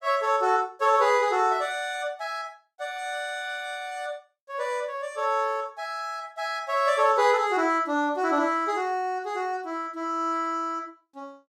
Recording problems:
none

